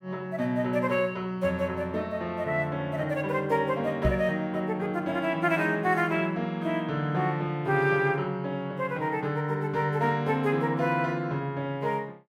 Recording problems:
microphone thump; at 4 s; peak +5 dB vs average level

